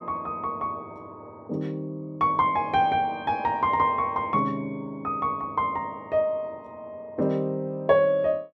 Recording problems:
none

